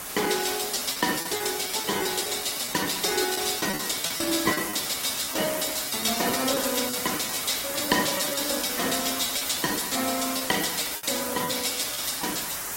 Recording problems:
codec artefacts; Opus, log-spectral distance 11 dB, nothing above 16 kHz
background hiss; SNR 4 dB
lost packets; 15% of the sound replaced, filled with repeated pitch periods

